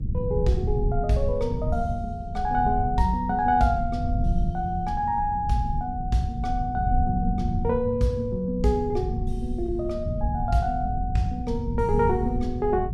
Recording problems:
hum; 50 Hz, harmonics up to 450 Hz, SNR 20 dB
rumble; below 110 Hz, SNR 5 dB

